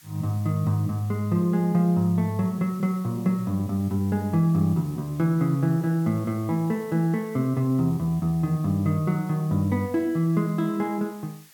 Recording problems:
background hiss; slope +2 dB per octave, SNR 25 dB

